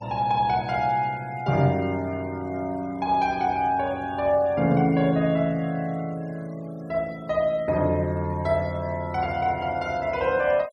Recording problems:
denoising artefacts; signal-to-artefact ratio 26 dB

